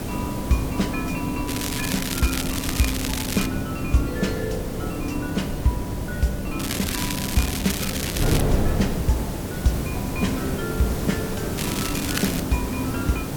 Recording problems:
lossy compression; AAC, log-spectral distance 4 dB
hiss; slope -6 dB per octave, SNR 4 dB
wind on the microphone; below 340 Hz, SNR 4 dB
crackle; from 1.5 to 3.5 s, from 6.5 to 8.5 s and at 12 s; loose cable, SNR 2 dB

